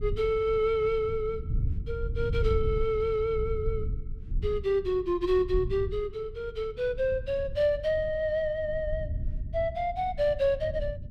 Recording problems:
rumble; below 92 Hz, SNR 8 dB

